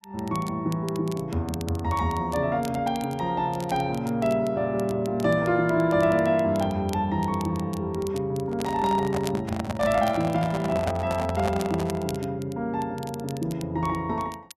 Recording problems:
crackle; vinyl, SNR 20 dB
handling noise; from 8.5 to 12 s; peak +1 dB vs average level

